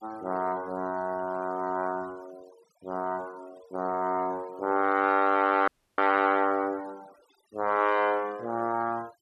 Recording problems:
denoising artefacts; signal-to-artefact ratio 24 dB
audio cutting out; at 5.5 s

